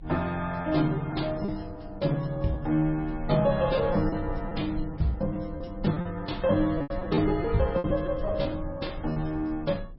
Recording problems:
lossy compression; MP3, log-spectral distance 2 dB, nothing above 5.2 kHz
low-frequency rumble; below 86 Hz, strongest tone 28 Hz, SNR 13 dB
lost packets; 7% of the sound replaced, filled with repeated pitch periods

